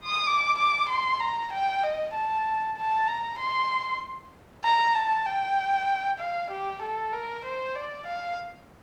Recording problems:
background hiss; SNR 26 dB

